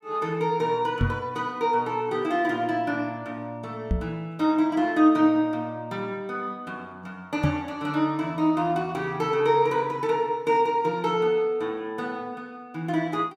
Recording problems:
microphone thump; at 1 s, at 4 s and at 7.5 s; peak +5 dB vs average level

